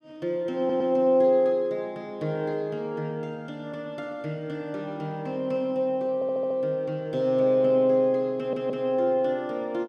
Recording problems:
stutter; at 0.5 s, at 6 s and at 8.5 s

